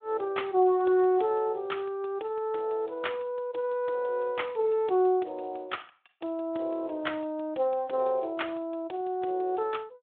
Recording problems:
telephone audio; 280 Hz to 3.7 kHz, Speex

